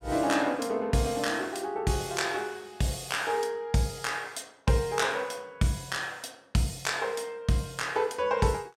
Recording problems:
none

